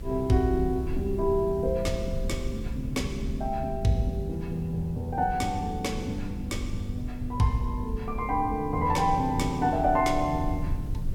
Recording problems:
hum; 50 Hz, harmonics up to 600 Hz, SNR 20 dB
background hiss; slope -3 dB per octave, SNR 28 dB
low-frequency rumble; below 86 Hz, SNR 9 dB

